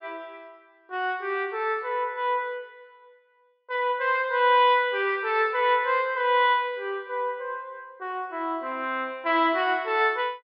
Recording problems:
treble missing; nothing above 5.5 kHz

